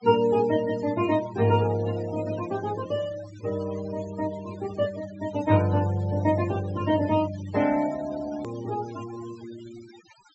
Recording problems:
low-pass filter; nothing above 7.8 kHz
denoising artefacts; signal-to-artefact ratio 16 dB
edit click; at 8.5 s

